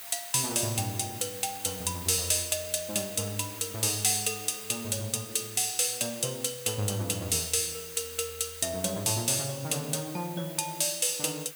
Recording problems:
hiss; SNR 13 dB

